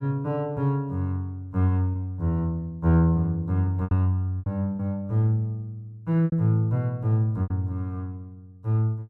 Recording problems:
packet loss; 5% of the sound replaced, filled with repeated pitch periods

